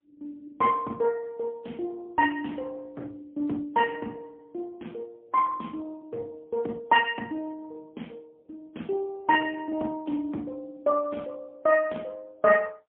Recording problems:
telephone audio; 240 Hz to 3.4 kHz, AMR-NB, then MP3

